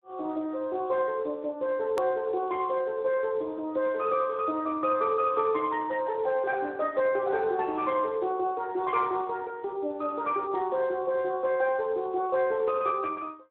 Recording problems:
phone line; 260 Hz to 3.1 kHz, Speex
edit click; at 2 s

